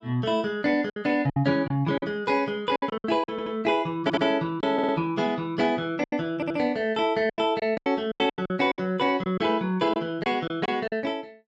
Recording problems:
lost packets; 10% of the sound replaced, filled with silence
audio stuttering; 4 times, first at 3.5 s

